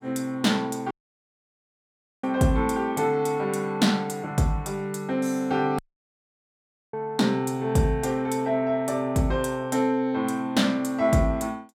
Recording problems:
dropout; at 1 s for 1.5 s and at 6 s for 1 s

